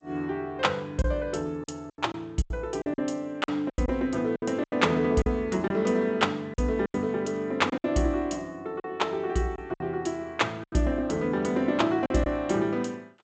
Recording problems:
lossy codec; G.722, log-spectral distance 2 dB, nothing above 7.6 kHz
packet loss; 9% of the sound replaced, filled with silence

